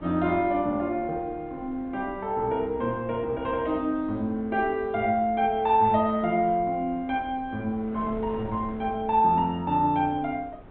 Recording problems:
treble cut off; nothing above 4 kHz
wind on the microphone; below 490 Hz, SNR 20 dB

